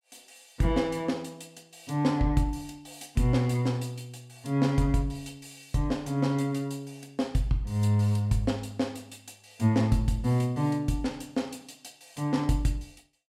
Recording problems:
none

